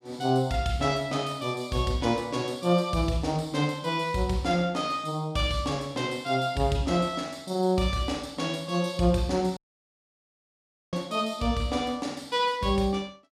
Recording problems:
audio cutting out; at 9.5 s for 1.5 s

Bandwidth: 15 kHz